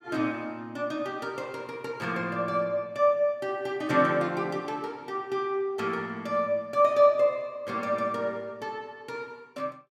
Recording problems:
none

